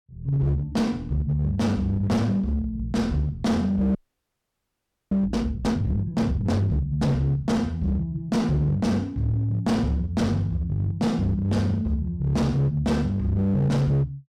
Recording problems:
distortion; hard clipping, uneven, signal-to-distortion ratio 10 dB
frozen audio; at 4 s for 1 s

